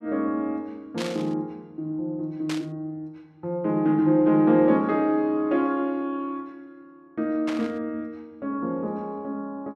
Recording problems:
burst of static; at 1 s, at 2.5 s and at 7.5 s; peak -4 dB vs average level

